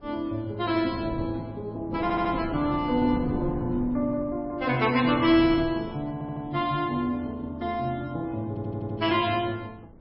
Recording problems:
codec artefacts; MP3, log-spectral distance 2 dB, nothing above 4.9 kHz
wind on the microphone; below 310 Hz, SNR 12 dB
audio stuttering; at 2 s, at 6 s and at 8.5 s

